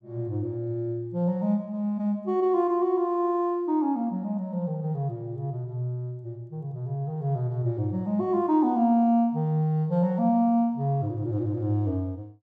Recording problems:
none

